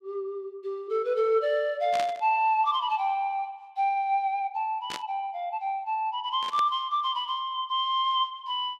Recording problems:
burst of static; at 2 s, at 5 s and at 6.5 s; peak -4 dB vs average level

